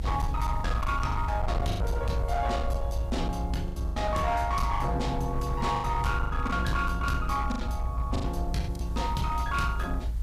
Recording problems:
distortion; hard clipping, signal-to-distortion ratio 11 dB
background hiss; SNR 26 dB
rumble; below 72 Hz, strongest tone 56 Hz, SNR 2 dB
lost packets; 9% of the sound replaced, filled with the last packet

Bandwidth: 15 kHz